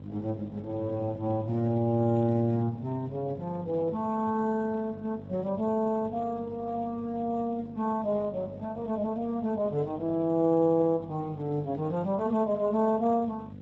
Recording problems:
lossy codec; MP3, then Speex, log-spectral distance 2 dB, nothing above 7.3 kHz
hum; 50 Hz, harmonics up to 550 Hz, SNR 15 dB

